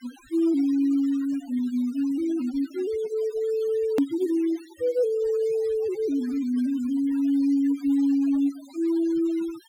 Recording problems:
denoising artefacts; signal-to-artefact ratio 22 dB
edit click; at 4 s

